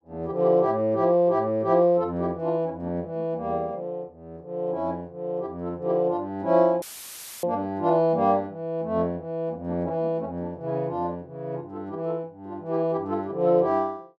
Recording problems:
audio cutting out; at 7 s for 0.5 s; filled with static

